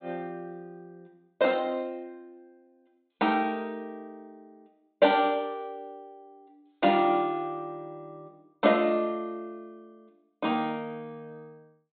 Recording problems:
treble cut off; nothing above 4 kHz

